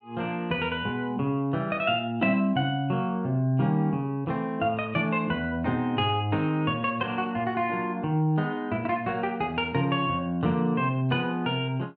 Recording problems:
none

